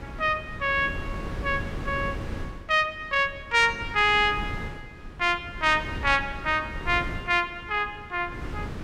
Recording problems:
wind noise; below 320 Hz, SNR 13 dB

